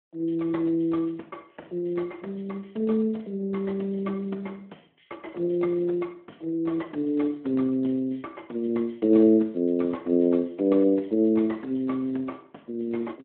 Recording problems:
phone line; 220 Hz to 3.3 kHz, Speex

